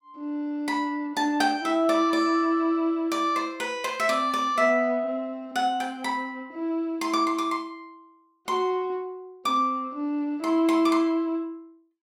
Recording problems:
none

